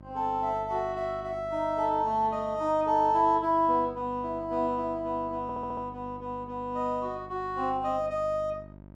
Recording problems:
electrical hum; 50 Hz, harmonics up to 1 kHz, SNR 19 dB
stutter; at 5.5 s

